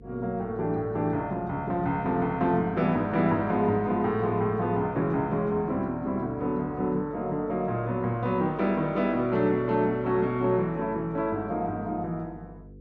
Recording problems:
electrical hum; 50 Hz, harmonics up to 500 Hz, SNR 22 dB

